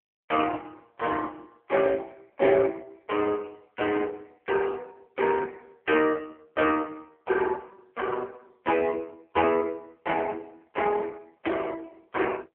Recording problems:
telephone audio; 320 Hz to 3.3 kHz, AMR-NB

